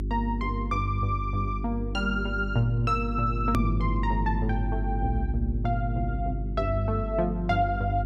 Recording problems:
hum; 50 Hz, harmonics up to 400 Hz, SNR 3 dB
hard cut with a click; at 3.5 s

